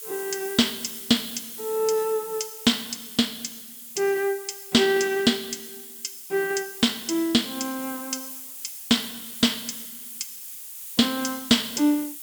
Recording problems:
hiss; slope +3 dB per octave, SNR 11 dB

